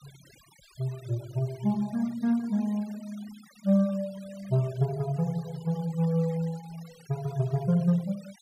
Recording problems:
noise reduction artefacts; signal-to-artefact ratio 23 dB

